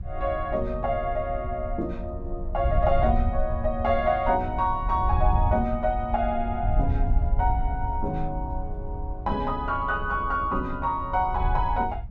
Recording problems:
wind on the microphone; below 76 Hz, SNR 4 dB

